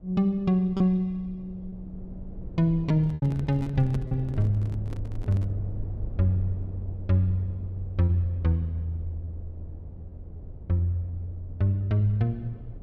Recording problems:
low-frequency rumble; below 110 Hz, SNR 14 dB
packet loss; 3% of the sound replaced, filled with repeated pitch periods
handling noise; from 3 to 5.5 s; peak -5 dB vs average level

